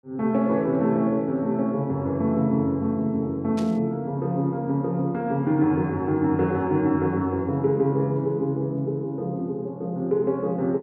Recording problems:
burst of static; at 3.5 s; peak -11 dB vs average level

